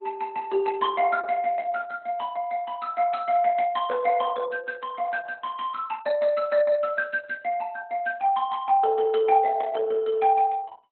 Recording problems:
codec artefacts; Opus, log-spectral distance 3 dB, nothing above 4.1 kHz

